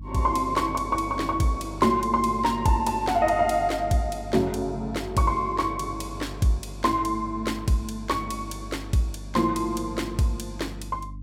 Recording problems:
electrical hum; 50 Hz, harmonics up to 300 Hz, SNR 14 dB

